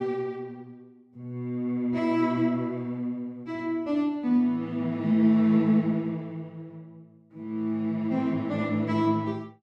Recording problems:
none

